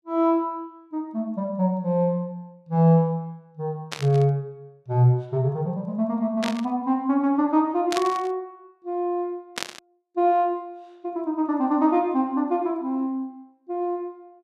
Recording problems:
static burst; 4 times, first at 4 s; peak 0 dB vs average level

